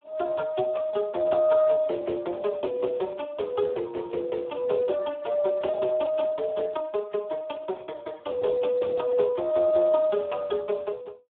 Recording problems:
phone line; 300 Hz to 2.6 kHz, Speex

